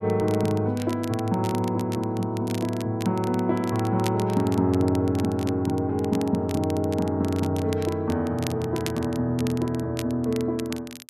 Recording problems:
crackle; vinyl, SNR 17 dB

